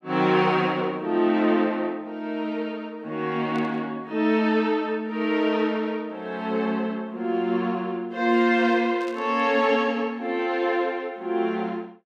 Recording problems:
static burst; at 3.5 s and at 9 s; peak -15 dB vs average level

